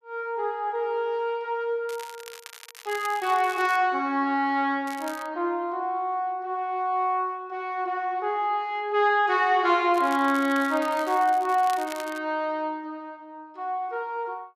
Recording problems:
crackle; from 2 to 4 s, at 5 s and from 10 to 12 s; loose cable, SNR 18 dB

